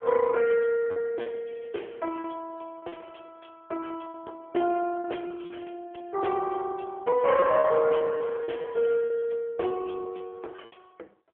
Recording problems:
phone line; 300 Hz to 3.8 kHz, AMR-NB
lost packets; 10% of the sound replaced, filled with repeated pitch periods

